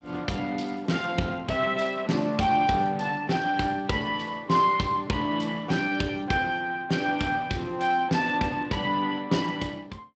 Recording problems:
lossy codec; Speex, log-spectral distance 4 dB, nothing above 7.6 kHz

